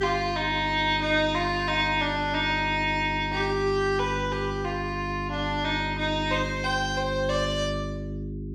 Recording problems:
hum; 50 Hz, harmonics up to 400 Hz, SNR 8 dB

